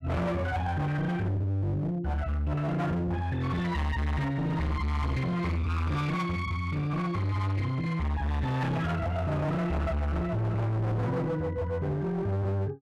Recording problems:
distortion; hard clipping, signal-to-distortion ratio 7 dB

